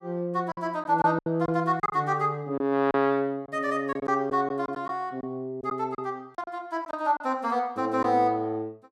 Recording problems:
packet loss; 7% of the sound replaced, filled with silence

